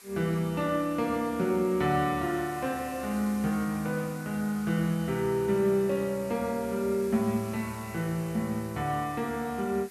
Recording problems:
hiss; SNR 19 dB

